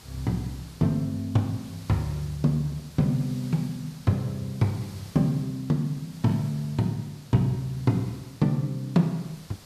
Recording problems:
background hiss; slope -2 dB per octave, SNR 21 dB

